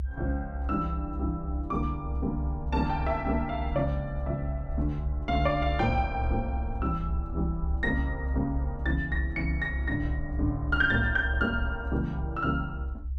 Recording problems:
rumble; below 68 Hz, strongest tone 66 Hz, SNR 3 dB

